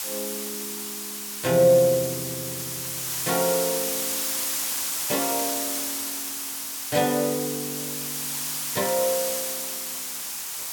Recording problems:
hiss; slope +2 dB per octave, SNR 2 dB

